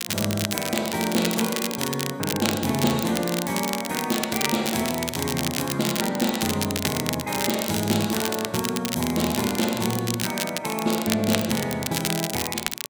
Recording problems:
crackle; vinyl, SNR 3 dB

